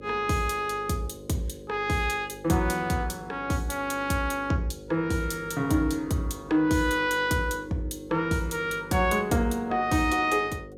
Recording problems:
hum; 50 Hz, harmonics up to 550 Hz, SNR 17 dB

